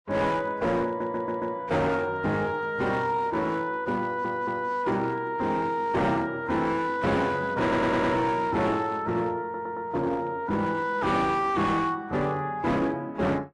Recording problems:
lossy codec; AAC, log-spectral distance 2 dB, nothing above 10.7 kHz
distortion; hard clipping, signal-to-distortion ratio 11 dB
audio stuttering; 4 times, first at 1 s

